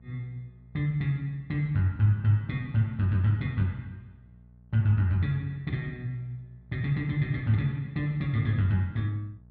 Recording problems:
hum; 60 Hz, harmonics up to 480 Hz, SNR 26 dB

